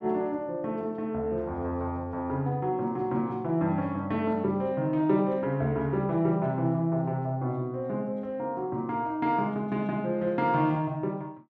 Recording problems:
none

